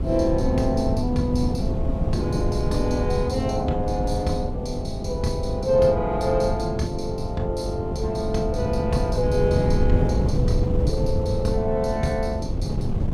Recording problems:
hum; 50 Hz, harmonics up to 750 Hz, SNR 12 dB
wind on the microphone; below 160 Hz, SNR 1 dB

